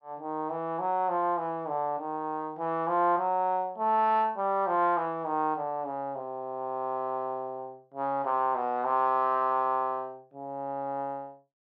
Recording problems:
none

